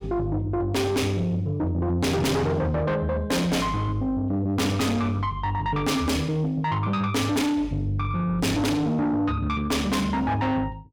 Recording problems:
distortion; soft clipping, signal-to-distortion ratio 6 dB

